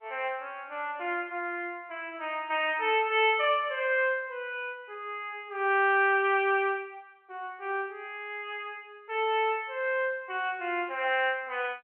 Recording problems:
phone line; 300 Hz to 3.3 kHz, G.711

